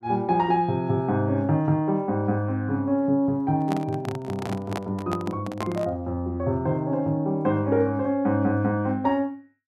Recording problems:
handling noise; from 3.5 to 6 s; peak -2 dB vs average level

